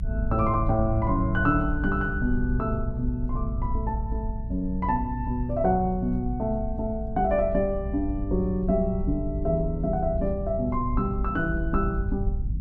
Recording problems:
rumble; below 80 Hz, SNR 5 dB

